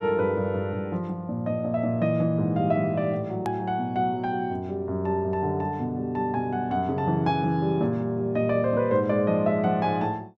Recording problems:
click at an edit; at 3.5 s

